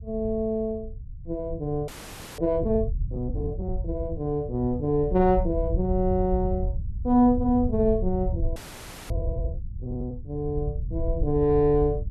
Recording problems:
low-frequency rumble; below 84 Hz, SNR 7 dB
frozen audio; at 2 s for 0.5 s and at 8.5 s for 0.5 s

